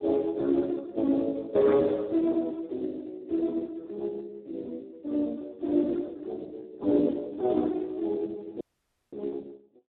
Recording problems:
phone line; 260 Hz to 2.2 kHz, Speex
audio cutting out; at 8.5 s for 0.5 s

